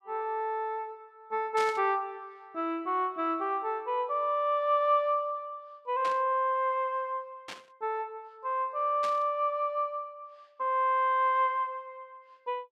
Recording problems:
static burst; 4 times, first at 1.5 s; peak -6 dB vs average level

